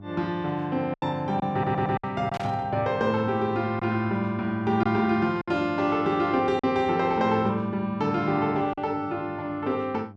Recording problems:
hum; 50 Hz, harmonics up to 800 Hz, SNR 20 dB
packet loss; 4% of the sound replaced, filled with silence
stutter; at 1.5 s
burst of static; at 2.5 s; peak -8 dB vs average level

